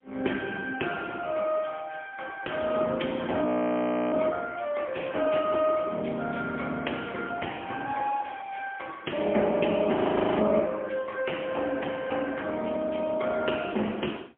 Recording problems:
phone line; 240 Hz to 3.3 kHz, AMR-NB, then MP3
frozen audio; at 3.5 s for 0.5 s and at 10 s

